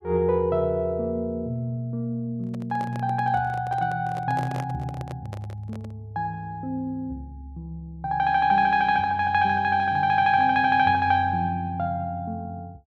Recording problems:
handling noise; from 2.5 to 6 s; peak -7 dB vs average level

